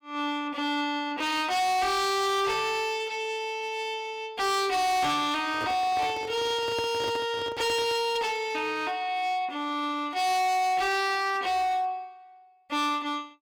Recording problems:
distorted audio; hard clipping, signal-to-distortion ratio 6 dB
handling noise; from 5.5 to 8 s; peak -6 dB vs average level

